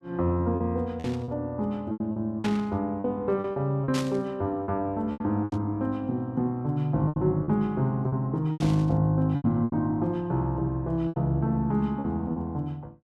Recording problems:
lost packets; 9% of the sound replaced, filled with repeated pitch periods
static burst; 5 times, first at 1 s; peak -4 dB vs average level

